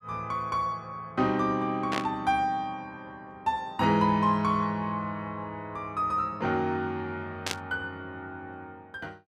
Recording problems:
burst of static; at 2 s and at 7.5 s; peak +3 dB vs average level

